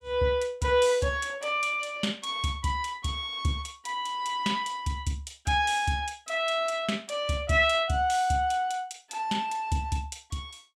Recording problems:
none

